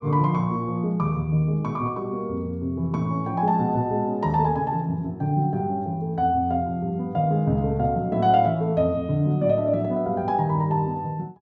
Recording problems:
none

